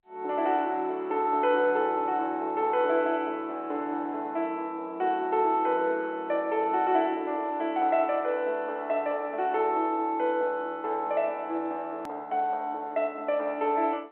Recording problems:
telephone audio; 240 Hz to 3.3 kHz, G.711
click at an edit; at 12 s

